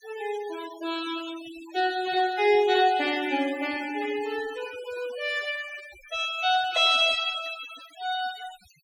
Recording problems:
noise reduction artefacts; signal-to-artefact ratio 17 dB

